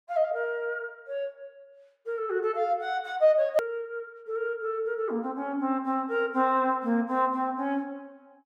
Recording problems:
edit click; at 3.5 s

